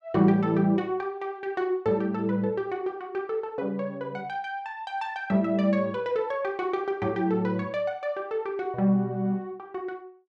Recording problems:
none

